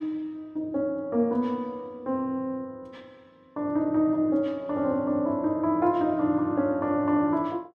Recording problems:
none

